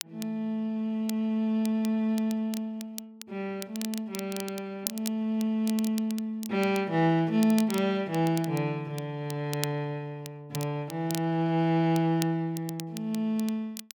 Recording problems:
crackling; vinyl, SNR 13 dB

